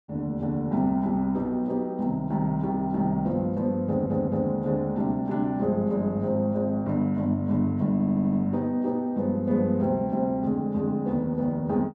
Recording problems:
audio stuttering; at 4 s and at 8 s

